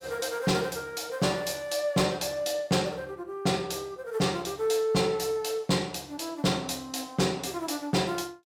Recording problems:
distortion; hard clipping, signal-to-distortion ratio 11 dB

